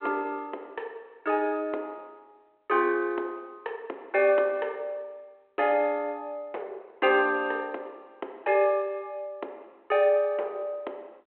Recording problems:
phone line; 320 Hz to 3.4 kHz, G.726

